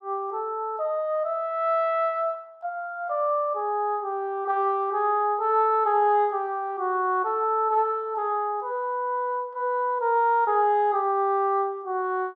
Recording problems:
none

